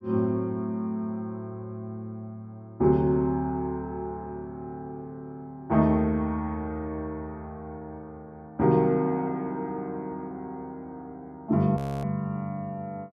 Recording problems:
audio freezing; at 12 s

